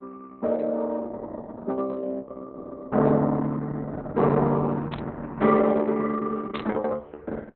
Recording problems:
lossy codec; Opus, log-spectral distance 4 dB, nothing above 3.8 kHz
burst of static; at 5 s and at 6.5 s; peak -7 dB vs average level

